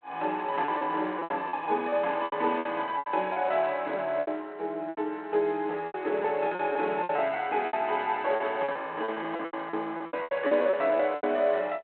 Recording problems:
phone line; 280 Hz to 3.4 kHz, G.726
lost packets; 15% of the sound replaced, filled with repeated pitch periods
burst of static; at 2 s and at 8.5 s; peak -15 dB vs average level

